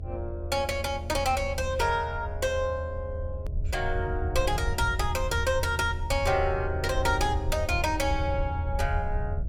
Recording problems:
electrical hum; 60 Hz, harmonics up to 660 Hz, SNR 19 dB
low-frequency rumble; below 82 Hz, SNR 5 dB
edit click; at 3.5 s

